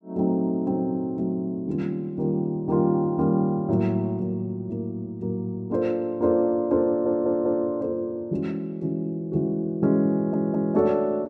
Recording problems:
audio stuttering; at 7 s and at 10 s

